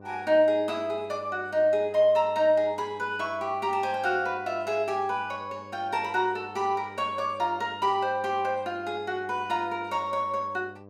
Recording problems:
hum; 50 Hz, harmonics up to 1.2 kHz, SNR 21 dB

